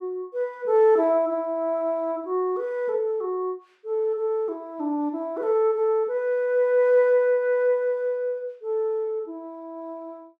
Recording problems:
none

